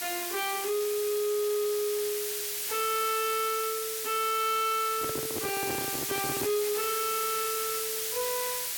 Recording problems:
distorted audio; soft clipping, signal-to-distortion ratio 11 dB
hiss; SNR 1 dB
handling noise; from 5 to 6.5 s; peak -1 dB vs average level

